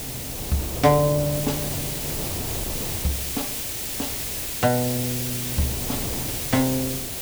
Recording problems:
background hiss; SNR 2 dB
wind noise; below 500 Hz, SNR 10 dB

